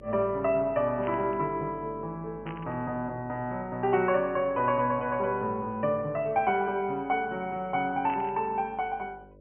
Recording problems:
treble cut off; nothing above 3 kHz
hum; 50 Hz, harmonics up to 600 Hz, SNR 23 dB
burst of static; at 1 s, at 2.5 s and at 8 s; peak -10 dB vs average level

